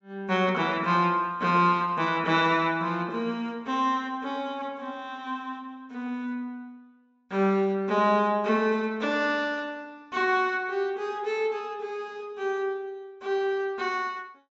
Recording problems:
treble missing; nothing above 8 kHz

